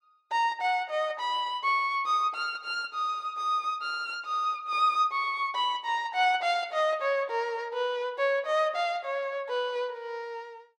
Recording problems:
none

